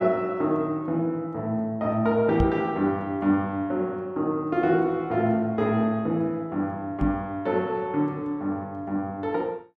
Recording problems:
knock on the microphone; at 2.5 s and at 7 s; peak +4 dB vs average level

